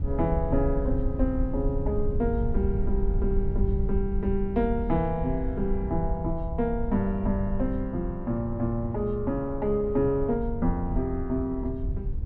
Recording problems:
rumble; below 78 Hz, SNR 4 dB

